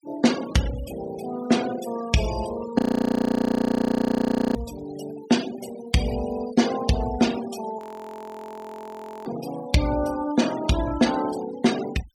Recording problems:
noise reduction artefacts; signal-to-artefact ratio 13 dB
audio freezing; at 3 s for 2 s and at 8 s for 1.5 s

